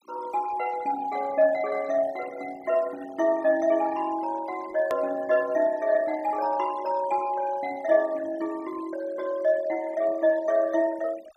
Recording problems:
noise reduction artefacts; signal-to-artefact ratio 21 dB
edit click; at 5 s

